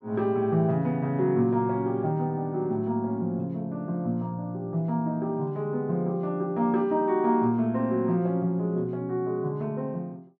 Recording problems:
none

